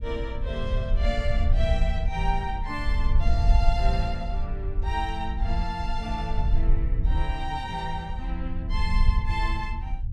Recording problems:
low-frequency rumble; below 60 Hz, SNR -4 dB

